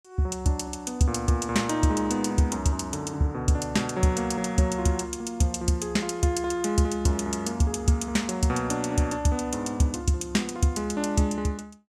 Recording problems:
none

